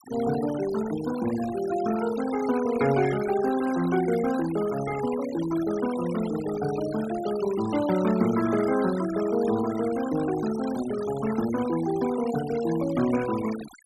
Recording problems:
noise reduction artefacts; signal-to-artefact ratio 13 dB

